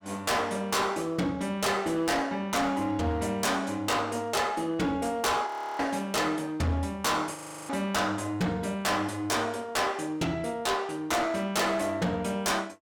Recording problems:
distorted audio; hard clipping, signal-to-distortion ratio 6 dB
audio freezing; at 5.5 s and at 7.5 s

